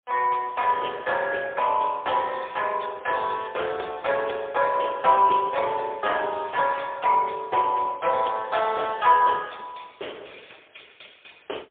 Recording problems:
telephone audio; 340 Hz to 3.5 kHz, AMR-NB, then MP3

